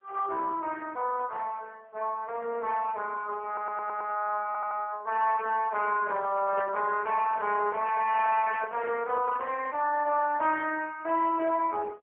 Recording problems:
phone line; 300 Hz to 2.8 kHz, AMR-NB
stutter; at 3.5 s and at 4.5 s
handling noise; from 6 to 10 s; peak -6 dB vs average level

